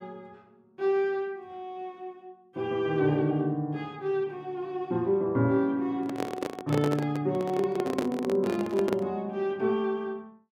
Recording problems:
handling noise; from 6 to 9 s; peak +2 dB vs average level

